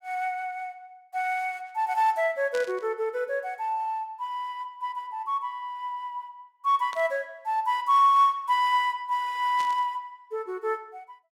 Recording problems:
burst of static; at 2.5 s, at 7 s and at 9.5 s; peak -9 dB vs average level

